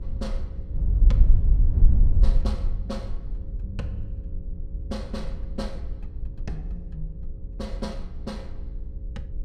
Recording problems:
electrical hum; 60 Hz, harmonics up to 540 Hz, SNR 8 dB
wind on the microphone; below 58 Hz, SNR -11 dB

